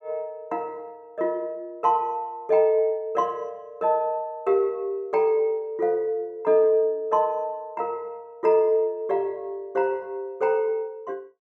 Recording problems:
none

